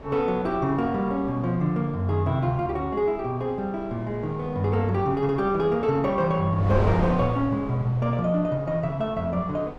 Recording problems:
wind on the microphone; below 680 Hz, SNR 12 dB

